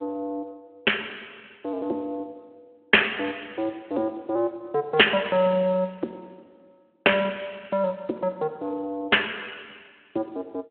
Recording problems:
phone line; 300 Hz to 3.3 kHz, Speex

